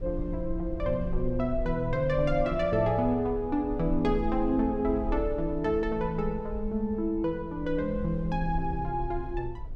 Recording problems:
rumble; below 56 Hz, SNR 10 dB

